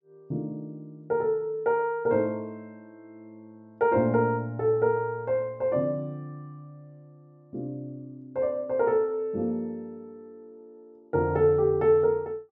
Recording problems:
treble missing; nothing above 8 kHz

